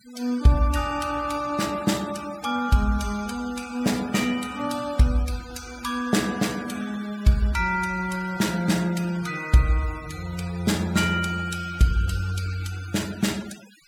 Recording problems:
noise reduction artefacts; signal-to-artefact ratio 18 dB

